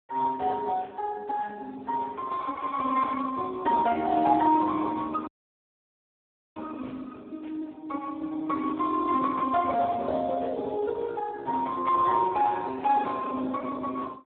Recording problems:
telephone audio; 260 Hz to 2.2 kHz, Speex
audio cutting out; at 5.5 s for 1.5 s

